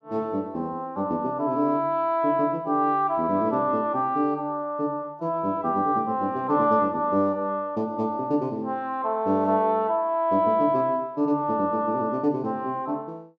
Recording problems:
none

